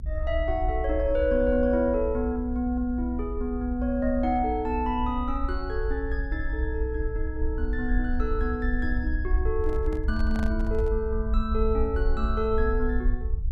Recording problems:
rumble; below 60 Hz, SNR 3 dB
handling noise; from 9.5 to 11 s; peak -6 dB vs average level

